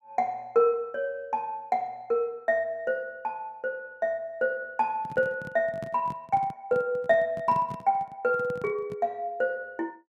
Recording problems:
handling noise; from 5 to 9 s; peak -6 dB vs average level

